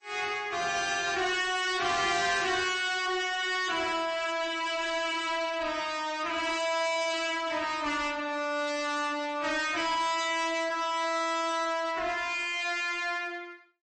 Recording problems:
lossy compression; AAC, then MP3, log-spectral distance 4 dB, nothing above 8.2 kHz
distortion; soft clipping, signal-to-distortion ratio 7 dB

